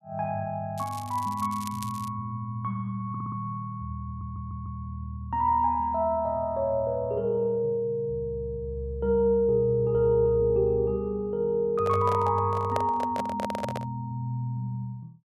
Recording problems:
crackling; from 1 to 2 s; loose cable, SNR 18 dB
stutter; at 3 s and at 4 s
microphone handling noise; from 12 to 14 s; peak +1 dB vs average level

